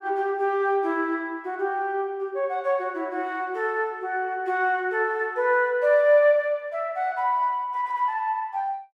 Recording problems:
none

